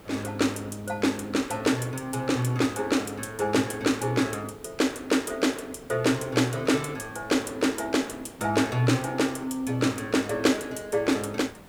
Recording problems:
background hiss; slope -6 dB per octave, SNR 22 dB

